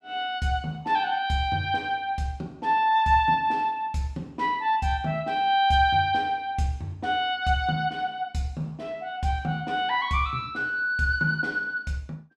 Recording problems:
none

